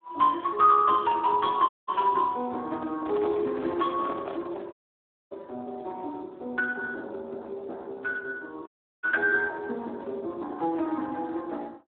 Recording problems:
phone line; 220 Hz to 3.1 kHz, Speex
dropout; at 1.5 s, at 4.5 s for 0.5 s and at 8.5 s
handling noise; from 2.5 to 4.5 s; peak -5 dB vs average level

